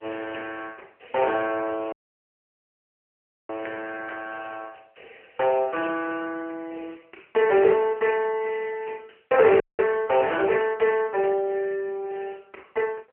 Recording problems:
phone line; 340 Hz to 3.1 kHz, AMR-NB
audio cutting out; at 2 s for 1.5 s and at 9.5 s

